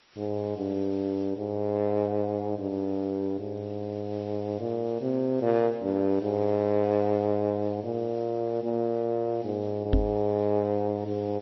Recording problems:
codec artefacts; MP2, then MP3, log-spectral distance 3 dB, nothing above 5 kHz
hiss; slope -1 dB per octave, SNR 29 dB
microphone thump; at 10 s; peak +7 dB vs average level

